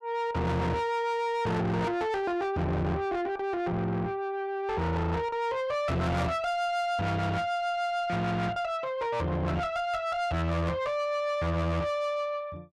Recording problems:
distorted audio; soft clipping, signal-to-distortion ratio 6 dB

